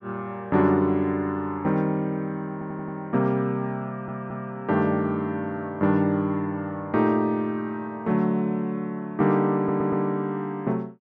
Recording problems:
stutter; at 2.5 s, at 4 s and at 9.5 s

